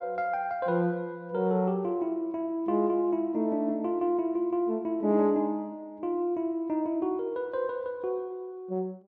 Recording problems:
none

